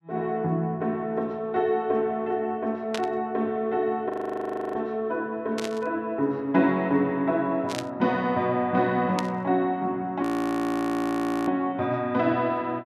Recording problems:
burst of static; 4 times, first at 3 s; peak -2 dB vs average level
audio freezing; at 4 s for 0.5 s and at 10 s for 1 s

